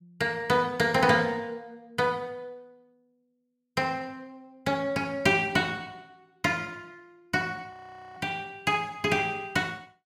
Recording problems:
audio freezing; at 7.5 s

